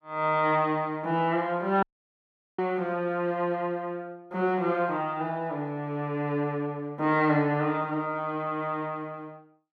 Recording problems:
dropout; at 2 s for 1 s

